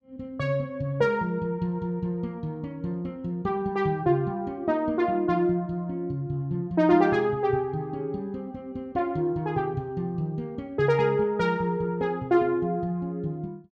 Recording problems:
none

